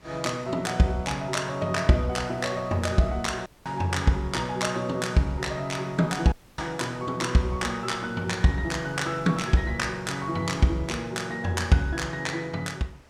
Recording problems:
wind on the microphone; below 2.2 kHz, SNR 25 dB
audio cutting out; at 3.5 s and at 6.5 s

